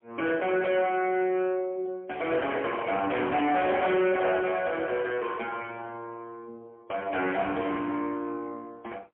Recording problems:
telephone audio; 220 Hz to 3.1 kHz, AMR-NB, then MP3
distorted audio; hard clipping, signal-to-distortion ratio 10 dB
handling noise; from 2.5 to 4.5 s; peak -2 dB vs average level

